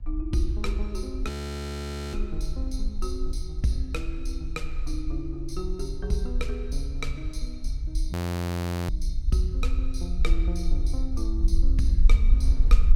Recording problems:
rumble; below 56 Hz, strongest tone 22 Hz, SNR -5 dB
wind on the microphone; below 280 Hz, SNR 21 dB
frozen audio; at 1.5 s for 1 s and at 8 s for 1 s

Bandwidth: 16.5 kHz